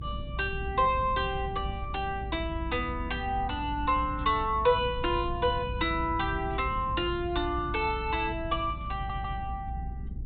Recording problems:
low-pass filter; nothing above 4 kHz
rumble; below 120 Hz, strongest tone 58 Hz, SNR 8 dB
audio stuttering; at 9 s

